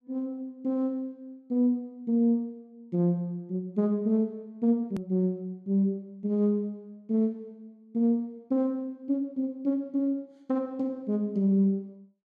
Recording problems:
hard cut with a click; at 5 s

